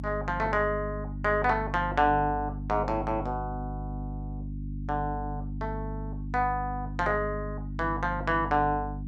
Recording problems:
electrical hum; 50 Hz, harmonics up to 300 Hz, SNR 7 dB

